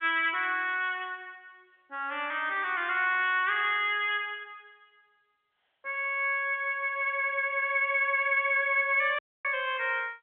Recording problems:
telephone audio; 300 Hz to 3.5 kHz, G.711
audio cutting out; at 9 s

